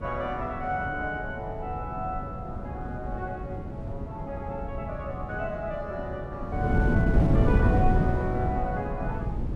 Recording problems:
wind on the microphone; below 210 Hz, SNR -3 dB

